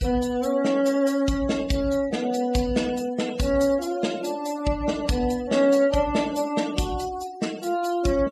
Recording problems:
noise reduction artefacts; signal-to-artefact ratio 16 dB

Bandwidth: 15 kHz